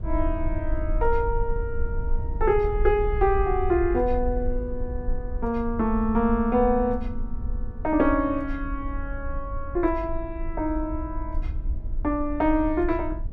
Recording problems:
rumble; below 58 Hz, SNR 7 dB

